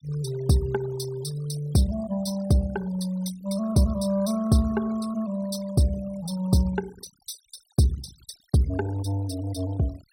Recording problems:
denoising artefacts; signal-to-artefact ratio 18 dB

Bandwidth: 16.5 kHz